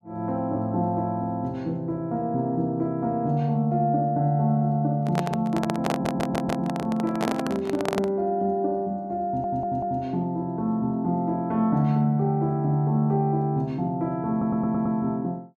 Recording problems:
microphone handling noise; from 5 to 8 s; peak +2 dB vs average level
stutter; at 6 s, at 9.5 s and at 14 s

